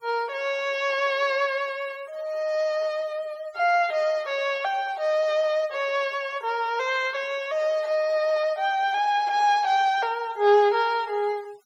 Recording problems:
denoising artefacts; signal-to-artefact ratio 23 dB

